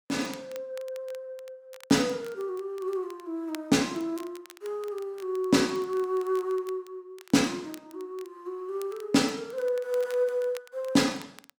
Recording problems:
crackle; vinyl, SNR 23 dB

